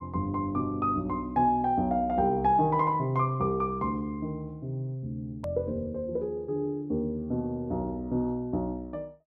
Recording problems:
edit click; at 5.5 s

